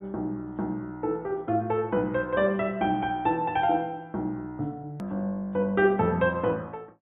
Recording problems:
treble cut off; nothing above 4 kHz
hard cut with a click; at 5 s

